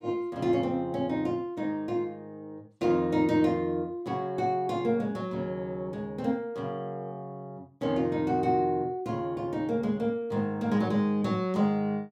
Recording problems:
none

